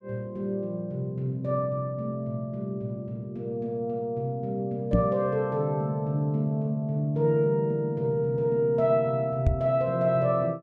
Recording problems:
microphone thump; at 5 s and at 9.5 s; peak +8 dB vs average level

